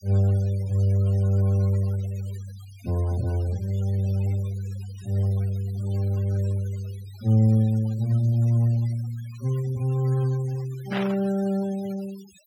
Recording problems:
noise reduction artefacts; signal-to-artefact ratio 23 dB
static burst; at 11 s; peak -3 dB vs average level

